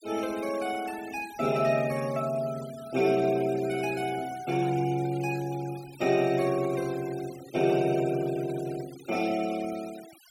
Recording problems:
denoising artefacts; signal-to-artefact ratio 18 dB

